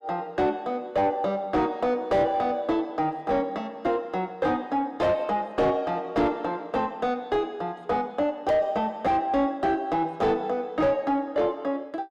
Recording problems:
distortion; soft clipping, signal-to-distortion ratio 6 dB

